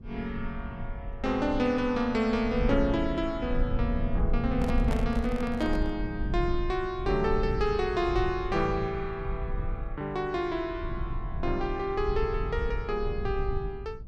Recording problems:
low-frequency rumble; below 76 Hz, SNR 5 dB
microphone handling noise; from 4.5 to 6 s; peak -1 dB vs average level

